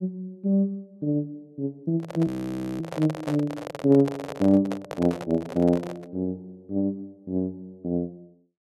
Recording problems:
microphone handling noise; from 2 to 6 s; peak -2 dB vs average level
frozen audio; at 2.5 s for 0.5 s

